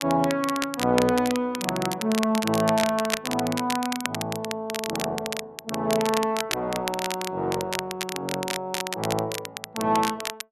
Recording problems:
crackle; vinyl, SNR 6 dB

